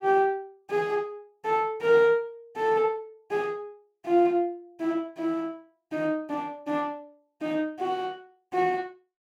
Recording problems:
none

